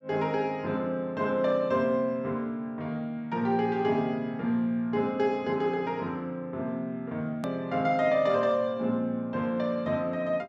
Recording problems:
treble cut off; nothing above 8 kHz
click at an edit; at 7.5 s

